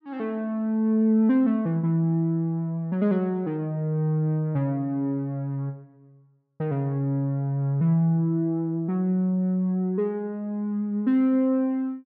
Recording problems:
low-pass filter; nothing above 7.2 kHz

